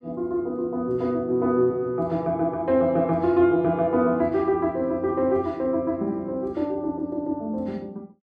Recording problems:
none

